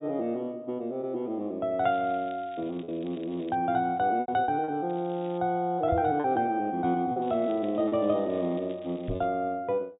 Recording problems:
low-pass filter; nothing above 4 kHz
lost packets; 4% of the sound replaced, filled with repeated pitch periods
crackling; from 2 to 3.5 s, at 5 s and from 7 to 9.5 s; loose cable, SNR 27 dB
microphone thump; at 6 s and at 9 s; peak 0 dB vs average level

